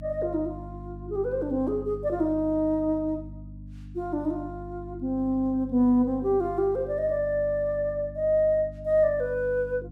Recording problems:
mains hum; 50 Hz, harmonics up to 300 Hz, SNR 15 dB

